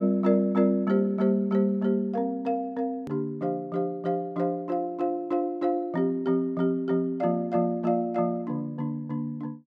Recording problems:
edit click; at 3 s

